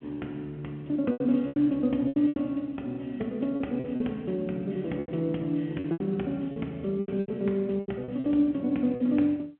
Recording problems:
phone line; 220 Hz to 3.8 kHz, G.711
packet loss; 11% of the sound replaced, filled with repeated pitch periods

